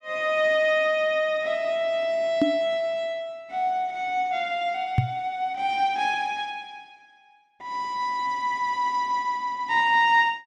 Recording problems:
knock on the microphone; at 2.5 s and at 5 s; peak +7 dB vs average level

